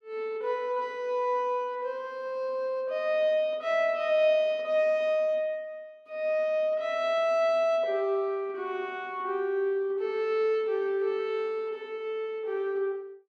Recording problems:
none

